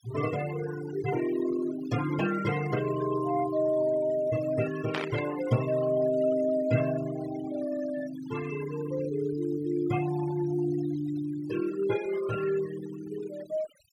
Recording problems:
noise reduction artefacts; signal-to-artefact ratio 13 dB
static burst; at 5 s; peak +1 dB vs average level

